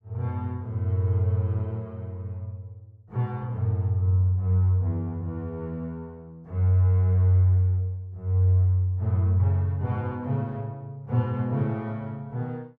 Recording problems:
none

